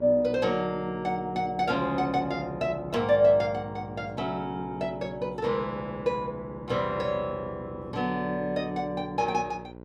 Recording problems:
hum; 60 Hz, harmonics up to 1.5 kHz, SNR 16 dB

